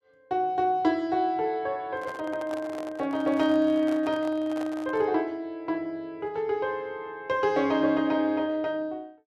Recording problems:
handling noise; from 2 to 5 s; peak -8 dB vs average level

